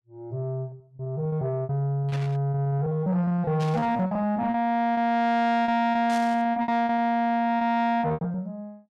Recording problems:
distorted audio; soft clipping, signal-to-distortion ratio 10 dB
lost packets; 18% of the sound replaced, filled with repeated pitch periods
static burst; at 2 s, at 3.5 s and at 6 s; peak -10 dB vs average level

